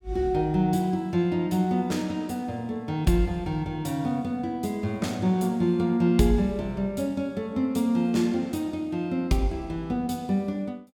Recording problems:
none

